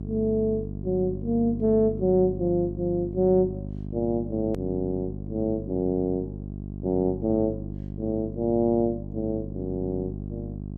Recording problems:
electrical hum; 50 Hz, harmonics up to 450 Hz, SNR 9 dB
edit click; at 4.5 s

